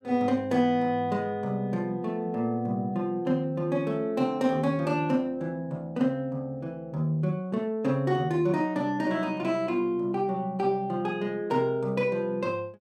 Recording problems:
none

